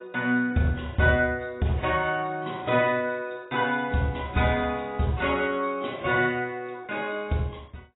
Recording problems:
codec artefacts; AAC, log-spectral distance 3 dB, nothing above 3.8 kHz

